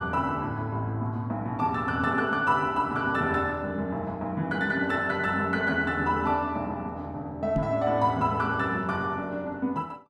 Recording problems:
microphone bump; at 7.5 s; peak +1 dB vs average level

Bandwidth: 12.5 kHz